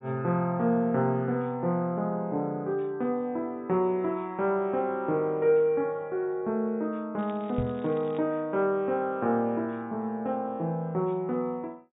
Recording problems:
low-pass filter; nothing above 3.8 kHz
crackle; from 7 to 8 s; loose cable, SNR 27 dB
knock on the microphone; at 7.5 s; peak 0 dB vs average level

